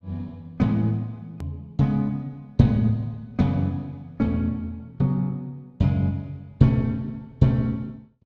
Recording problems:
click at an edit; at 1.5 s

